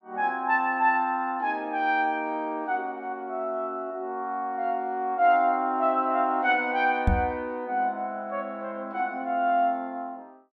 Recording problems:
microphone thump; at 7 s; peak +6 dB vs average level

